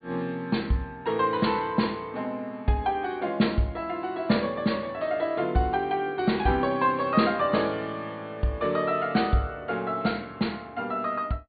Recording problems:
treble missing; nothing above 4.6 kHz

